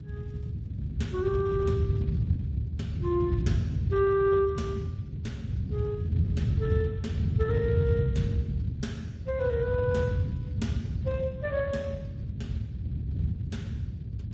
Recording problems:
lossy codec; Speex, log-spectral distance 2 dB, nothing above 7.6 kHz
rumble; below 150 Hz, SNR 0 dB

